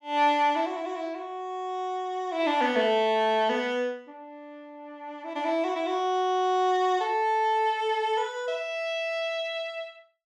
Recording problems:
none

